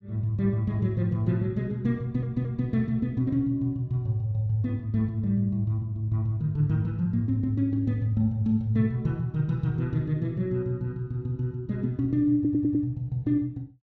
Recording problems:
audio stuttering; at 2 s and at 12 s

